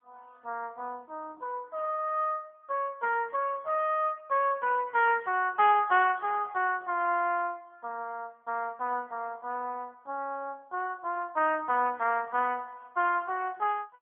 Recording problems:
telephone audio; 260 Hz to 3.3 kHz, AMR-NB

